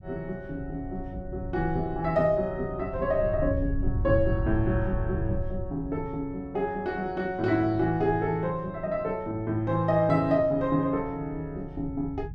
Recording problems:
rumble; below 110 Hz, SNR 8 dB

